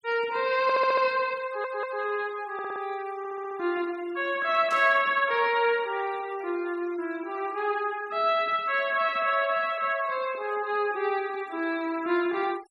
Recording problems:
noise reduction artefacts; signal-to-artefact ratio 23 dB
audio stuttering; 4 times, first at 0.5 s
burst of static; at 4.5 s; peak -11 dB vs average level

